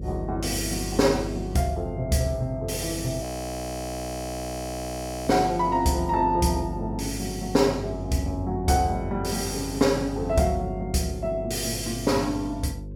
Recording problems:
mains hum; 50 Hz, harmonics up to 550 Hz, SNR 10 dB
frozen audio; at 3 s for 2 s

